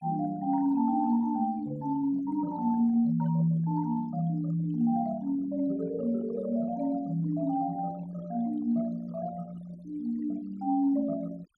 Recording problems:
denoising artefacts; signal-to-artefact ratio 24 dB

